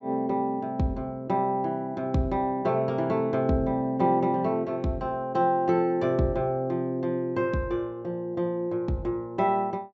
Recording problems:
treble cut off; nothing above 8 kHz

